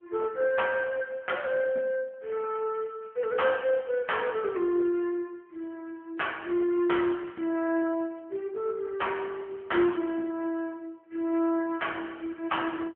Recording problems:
telephone audio; 130 Hz to 3.2 kHz, AMR-NB

